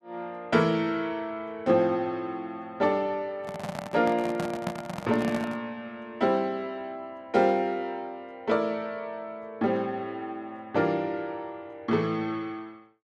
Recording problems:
handling noise; from 3.5 to 5.5 s; peak +1 dB vs average level

